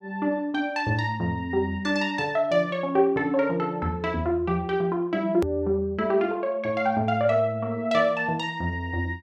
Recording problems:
edit click; at 5.5 s

